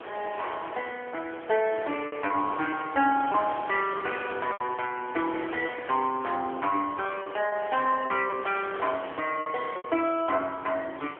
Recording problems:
telephone audio; 280 Hz to 3.3 kHz, AMR-NB
wind noise; below 1.8 kHz, SNR 13 dB
lost packets; 6% of the sound replaced, filled with repeated pitch periods

